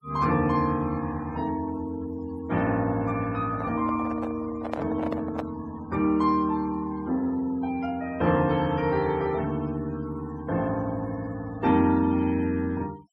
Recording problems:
denoising artefacts; signal-to-artefact ratio 23 dB
handling noise; from 3.5 to 5.5 s; peak -1 dB vs average level

